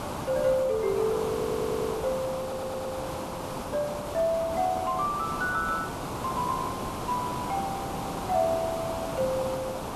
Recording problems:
background hiss; SNR 4 dB
audio stuttering; at 1.5 s and at 2.5 s

